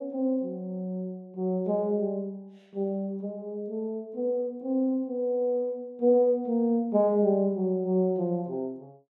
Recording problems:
none

